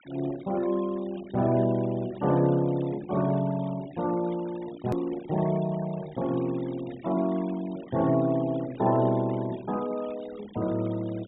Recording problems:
treble cut off; nothing above 4 kHz
denoising artefacts; signal-to-artefact ratio 21 dB
edit click; at 5 s

